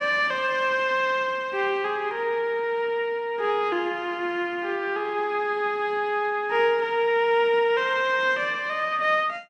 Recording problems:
none

